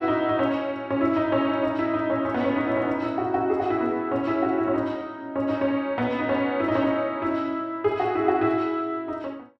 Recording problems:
none

